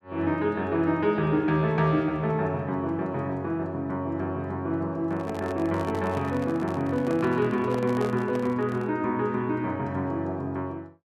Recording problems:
microphone handling noise; from 5 to 9 s; peak -5 dB vs average level

